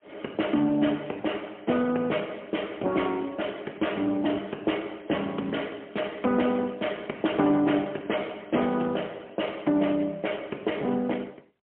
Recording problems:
phone line; 260 Hz to 3.3 kHz, AMR-NB, then MP3

